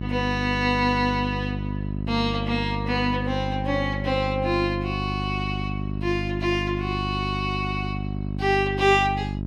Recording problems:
hum; 50 Hz, harmonics up to 650 Hz, SNR 4 dB

